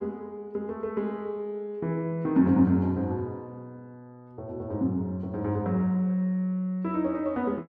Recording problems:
none

